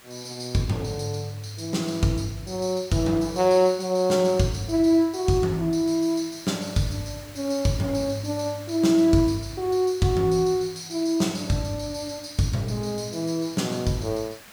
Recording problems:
background hiss; SNR 22 dB

